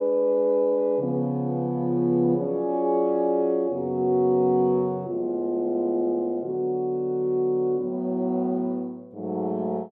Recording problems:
none

